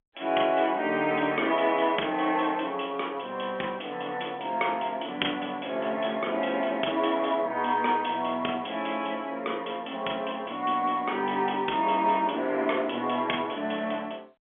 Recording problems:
phone line; 240 Hz to 3.4 kHz, G.711

